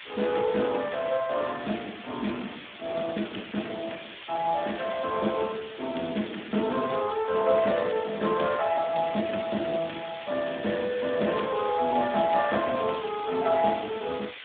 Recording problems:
phone line; 220 Hz to 3.6 kHz, Speex
hiss; SNR 13 dB

